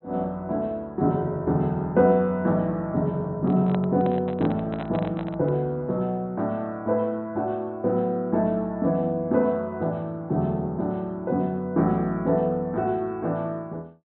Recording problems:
treble cut off; nothing above 4 kHz
microphone handling noise; from 3.5 to 5.5 s; peak -4 dB vs average level

